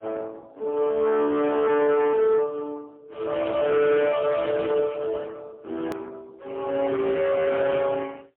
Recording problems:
telephone audio; 320 Hz to 2.9 kHz, AMR-NB, then MP3
distorted audio; hard clipping, signal-to-distortion ratio 10 dB
hard cut with a click; at 6 s

